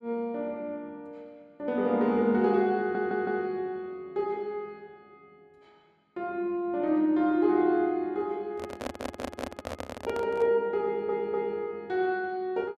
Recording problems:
audio stuttering; at 3 s, at 9 s and at 11 s
handling noise; from 8.5 to 10 s; peak -2 dB vs average level

